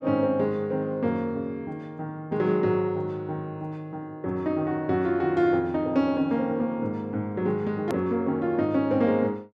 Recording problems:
hard cut with a click; at 8 s

